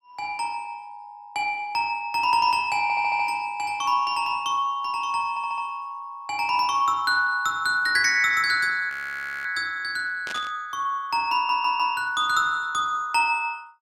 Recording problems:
stutter; at 3 s, at 5.5 s and at 11 s
audio freezing; at 9 s for 0.5 s
burst of static; at 10 s; peak -7 dB vs average level

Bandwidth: 16.5 kHz